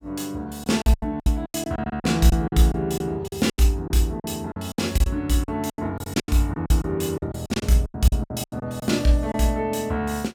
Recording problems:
packet loss; 16% of the sound replaced, filled with silence

